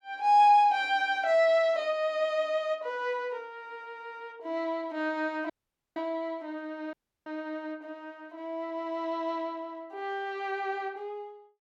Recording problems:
dropout; at 5.5 s and at 7 s

